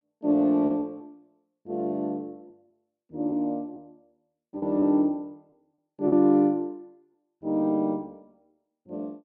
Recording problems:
lost packets; 4% of the sound replaced, filled with repeated pitch periods

